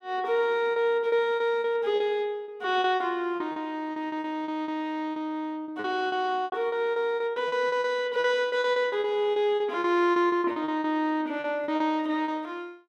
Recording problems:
lost packets; 15% of the sound replaced, filled with repeated pitch periods

